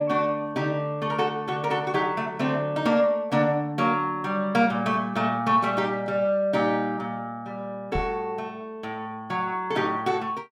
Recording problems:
knock on the microphone; at 8 s; peak -2 dB vs average level

